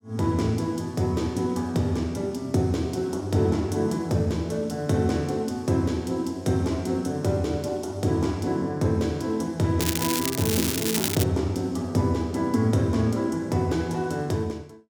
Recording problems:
crackling; from 10 to 11 s; loose cable, SNR 2 dB

